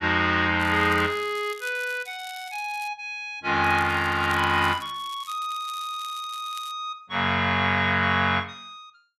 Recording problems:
crackling; from 0.5 to 3 s and from 3.5 to 6.5 s; loose cable, SNR 21 dB

